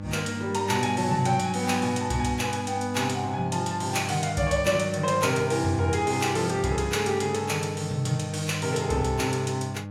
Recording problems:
hum; 50 Hz, harmonics up to 1.7 kHz, SNR 11 dB

